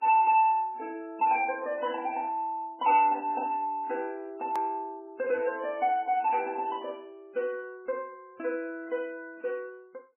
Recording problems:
lossy compression; MP3, log-spectral distance 2 dB, nothing above 2.7 kHz
distortion; soft clipping, signal-to-distortion ratio 10 dB
click at an edit; at 4.5 s

